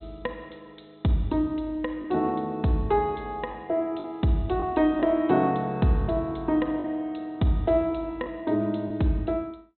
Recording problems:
low-pass filter; nothing above 3.9 kHz
lost packets; 2% of the sound replaced, filled with the last packet

